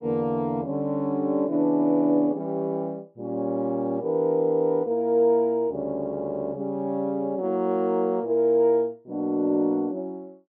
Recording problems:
none

